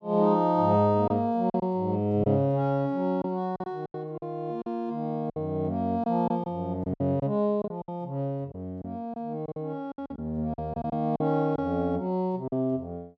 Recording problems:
packet loss; 8% of the sound replaced, filled with silence

